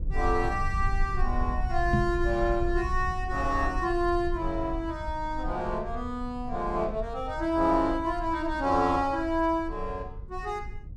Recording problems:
low-frequency rumble; below 60 Hz, strongest tone 20 Hz, SNR 8 dB
knock on the microphone; at 2 s; peak +6 dB vs average level

